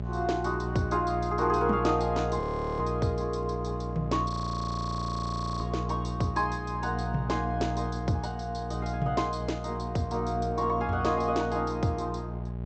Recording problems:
low-pass filter; nothing above 8 kHz
mains hum; 60 Hz, harmonics up to 840 Hz, SNR 5 dB
frozen audio; at 2.5 s and at 4.5 s for 1.5 s

